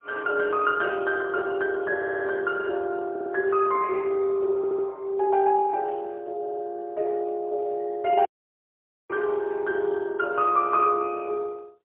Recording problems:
phone line; 300 Hz to 3.1 kHz, AMR-NB, then MP3
stutter; 4 times, first at 2 s
audio cutting out; at 8.5 s for 1 s

